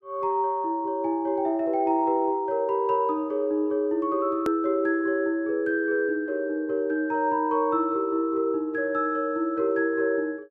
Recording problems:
edit click; at 4.5 s

